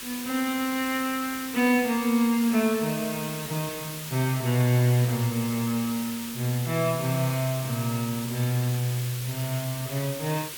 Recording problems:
background hiss; SNR 9 dB

